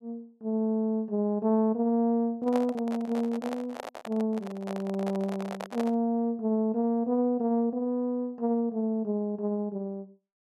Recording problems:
handling noise; from 2.5 to 6 s; peak -3 dB vs average level

